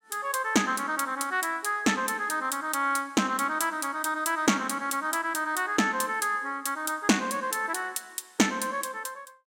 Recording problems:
none

